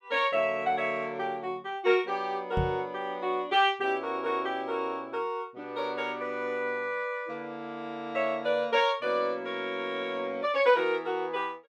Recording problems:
microphone thump; at 2.5 s; peak +3 dB vs average level

